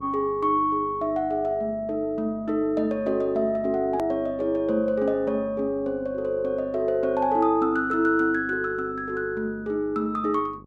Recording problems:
hum; 50 Hz, harmonics up to 950 Hz, SNR 22 dB
hard cut with a click; at 4 s

